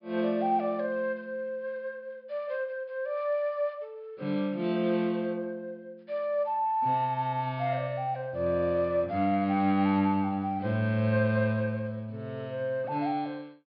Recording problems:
low-pass filter; nothing above 5.5 kHz

